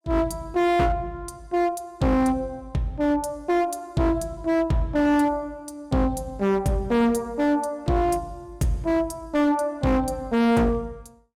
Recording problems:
distortion; hard clipping, signal-to-distortion ratio 7 dB

